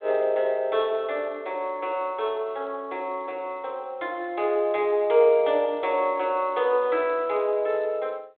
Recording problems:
telephone audio; 300 Hz to 4 kHz, G.726

